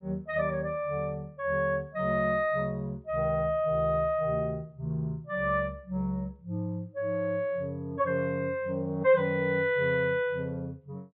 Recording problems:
treble cut off; nothing above 4 kHz

